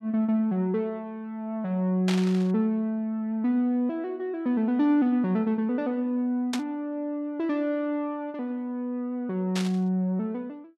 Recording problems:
static burst; at 2 s, at 6.5 s and at 9.5 s; peak -1 dB vs average level

